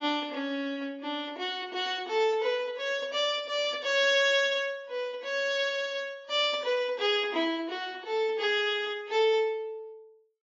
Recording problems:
lossy compression; AAC, log-spectral distance 2 dB, nothing above 7.1 kHz

